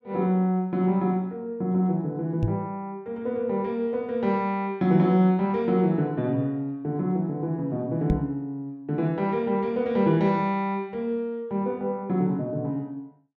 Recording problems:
microphone thump; at 2.5 s and at 8 s; peak +4 dB vs average level

